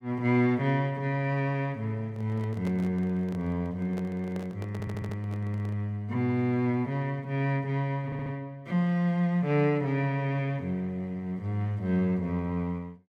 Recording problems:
handling noise; from 2 to 6 s; peak -8 dB vs average level
stutter; at 4.5 s and at 8 s

